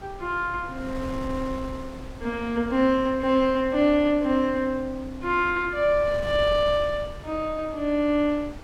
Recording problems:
wind noise; below 330 Hz, SNR 16 dB

